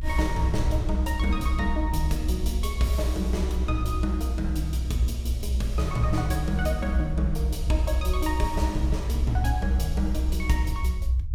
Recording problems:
low-frequency rumble; below 66 Hz, strongest tone 62 Hz, SNR -2 dB

